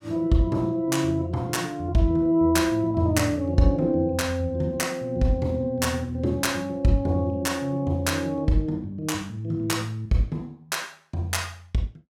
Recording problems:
none

